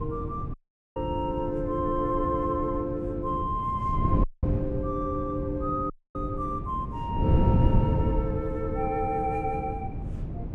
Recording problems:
wind on the microphone; below 180 Hz, SNR 1 dB
audio cutting out; at 0.5 s, at 4 s and at 6 s

